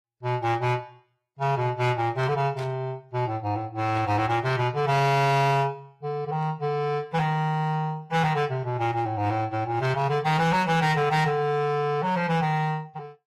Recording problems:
codec artefacts; AAC, log-spectral distance 2 dB, nothing above 14.3 kHz
distortion; hard clipping, uneven, signal-to-distortion ratio 11 dB
burst of static; at 2.5 s and at 4 s; peak -11 dB vs average level

